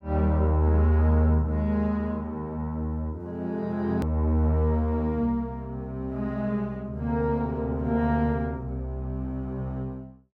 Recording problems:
hard cut with a click; at 4 s

